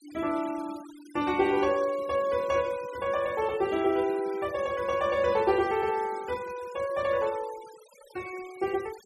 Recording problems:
noise reduction artefacts; signal-to-artefact ratio 19 dB

